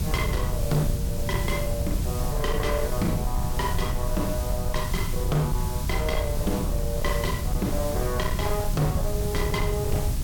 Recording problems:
distorted audio; hard clipping, signal-to-distortion ratio 11 dB
hiss; slope -1 dB per octave, SNR 8 dB
rumble; below 120 Hz, SNR 0 dB
wind on the microphone; below 240 Hz, SNR 15 dB

